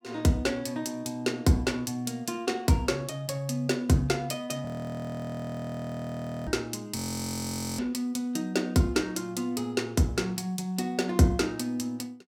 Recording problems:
frozen audio; at 4.5 s for 2 s and at 7 s for 1 s

